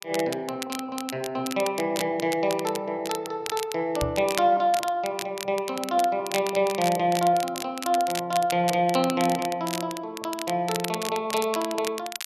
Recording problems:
crackle; vinyl, SNR 10 dB
microphone thump; at 4 s; peak -2 dB vs average level

